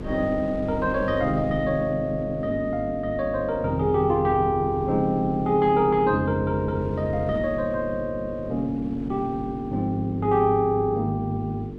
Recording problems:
electrical hum; 50 Hz, harmonics up to 450 Hz, SNR 12 dB
wind on the microphone; below 300 Hz, SNR 18 dB

